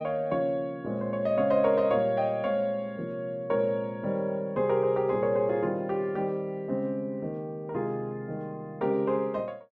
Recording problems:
none

